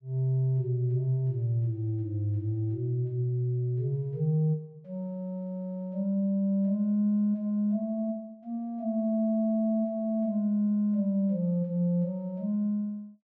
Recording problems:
none

